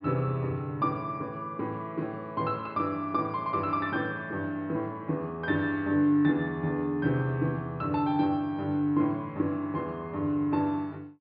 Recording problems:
treble cut off; nothing above 4.9 kHz

